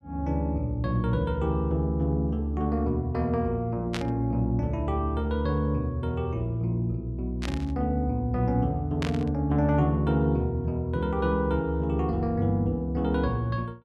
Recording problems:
static burst; at 4 s, at 7.5 s and at 9 s; peak -2 dB vs average level

